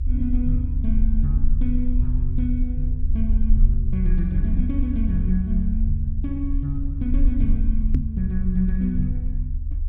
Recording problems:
rumble; below 52 Hz, strongest tone 30 Hz, SNR -2 dB
knock on the microphone; at 8 s; peak +6 dB vs average level

